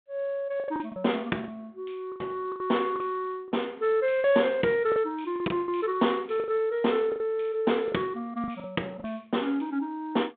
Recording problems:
telephone audio; 190 Hz to 3.6 kHz, G.726
lost packets; 10% of the sound replaced, filled with the last packet

